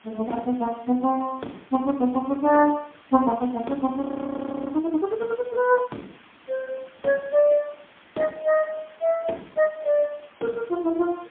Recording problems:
telephone audio; 190 Hz to 2.4 kHz, AMR-NB, then MP3
background hiss; SNR 27 dB
audio freezing; at 4 s for 0.5 s

